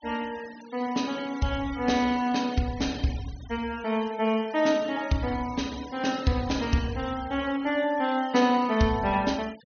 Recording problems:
treble missing; nothing above 6.4 kHz
noise reduction artefacts; signal-to-artefact ratio 19 dB

